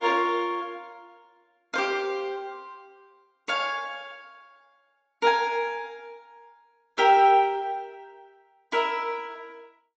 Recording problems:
lossy codec; AAC, log-spectral distance 2 dB

